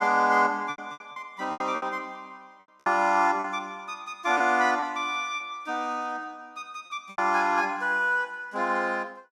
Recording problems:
lost packets; 7% of the sound replaced, filled with repeated pitch periods

